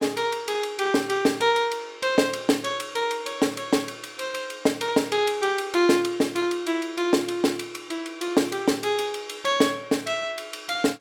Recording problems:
none

